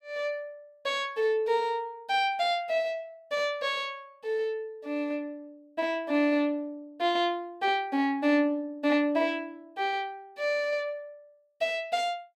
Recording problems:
none

